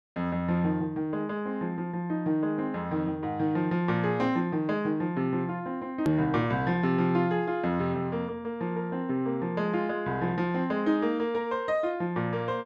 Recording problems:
hard cut with a click; at 6 s

